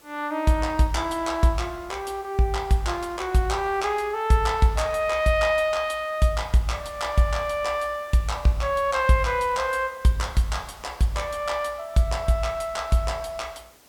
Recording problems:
hiss; slope -3 dB per octave, SNR 27 dB

